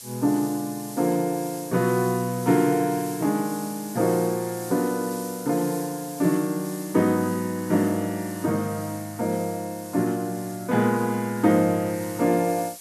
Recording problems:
hiss; SNR 14 dB

